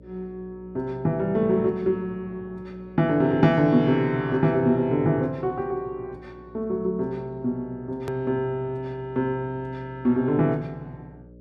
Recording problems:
hum; 60 Hz, harmonics up to 600 Hz, SNR 23 dB
hard cut with a click; at 8 s

